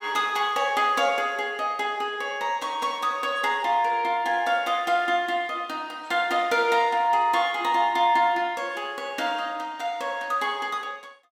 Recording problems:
none

